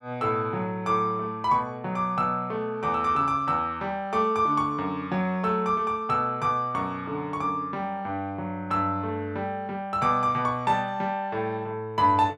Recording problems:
none

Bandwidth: 13 kHz